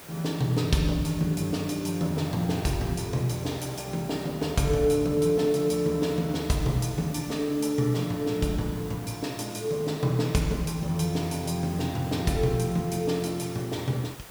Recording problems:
background hiss; slope -3 dB per octave, SNR 18 dB

